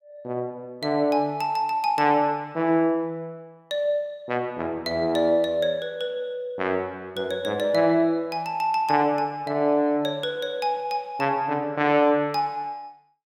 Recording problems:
none

